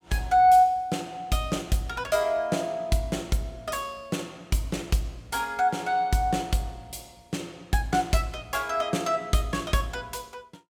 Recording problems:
none

